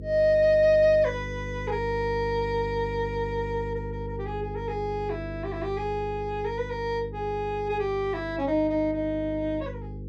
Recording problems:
hum; 50 Hz, harmonics up to 500 Hz, SNR 10 dB

